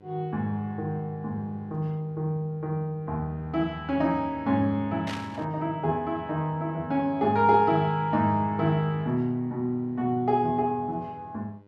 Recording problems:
electrical hum; 50 Hz, harmonics up to 1.5 kHz, SNR 25 dB
burst of static; at 5 s; peak -5 dB vs average level

